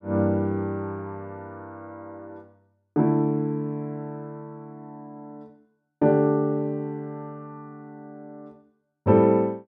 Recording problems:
none

